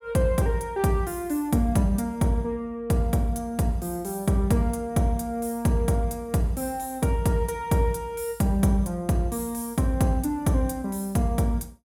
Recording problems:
none

